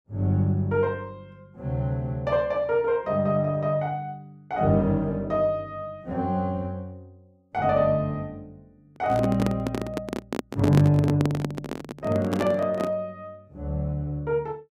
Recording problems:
handling noise; from 9 to 13 s; peak +4 dB vs average level

